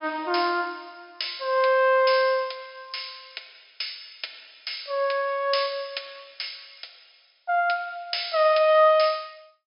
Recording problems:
low-pass filter; nothing above 5.5 kHz

